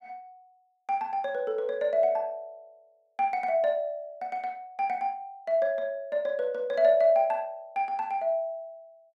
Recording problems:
none

